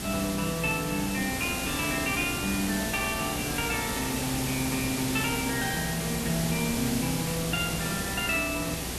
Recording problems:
mains hum; 60 Hz, harmonics up to 840 Hz, SNR 14 dB
hiss; SNR 2 dB

